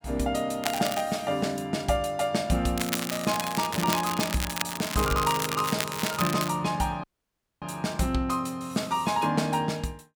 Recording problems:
crackling; at 0.5 s and from 3 to 6.5 s; loose cable, SNR 5 dB
dropout; at 7 s for 0.5 s

